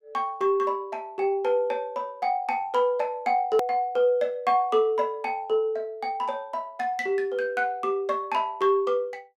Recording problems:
edit click; at 3.5 s

